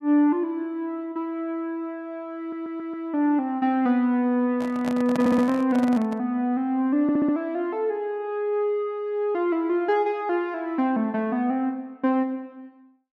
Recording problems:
stutter; at 2.5 s, at 5 s and at 7 s
microphone handling noise; from 4.5 to 6 s; peak -2 dB vs average level

